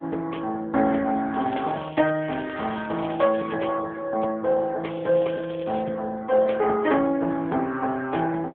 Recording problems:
phone line; 260 Hz to 3.4 kHz, AMR-NB
crackling; from 1.5 to 3.5 s and at 5 s; loose cable, SNR 21 dB

